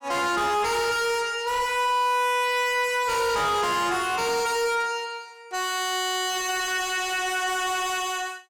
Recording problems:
distortion; soft clipping, signal-to-distortion ratio 6 dB

